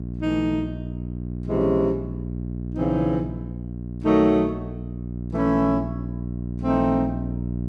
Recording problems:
hum; 60 Hz, harmonics up to 420 Hz, SNR 8 dB

